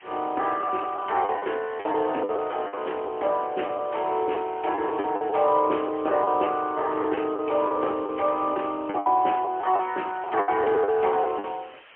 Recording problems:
phone line; 260 Hz to 3.2 kHz, AMR-NB, then MP3
background hiss; SNR 24 dB
lost packets; 11% of the sound replaced, filled with the last packet

